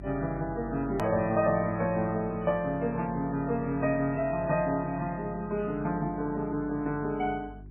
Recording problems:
lossy codec; MP3, log-spectral distance 2 dB, nothing above 13.1 kHz
hum; 50 Hz, harmonics up to 400 Hz, SNR 17 dB
hard cut with a click; at 1 s

